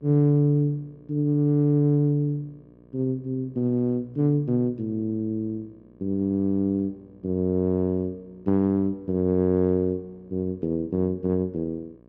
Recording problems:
hum; 60 Hz, harmonics up to 1.2 kHz, SNR 28 dB

